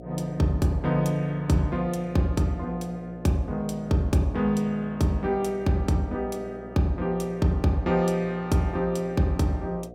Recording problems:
hum; 60 Hz, harmonics up to 720 Hz, SNR 17 dB

